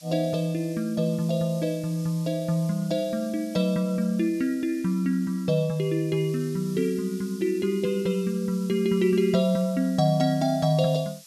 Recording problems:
hiss; SNR 21 dB

